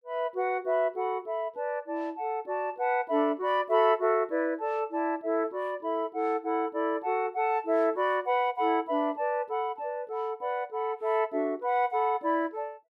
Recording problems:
none

